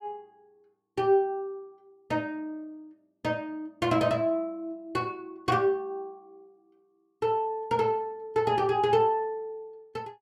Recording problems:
none

